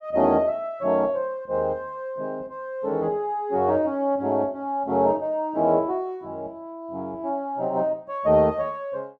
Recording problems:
none

